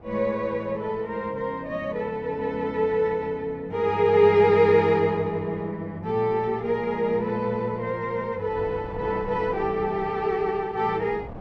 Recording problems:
wind noise; below 630 Hz, SNR 21 dB

